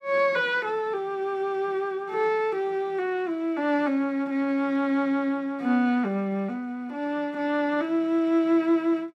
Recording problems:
none

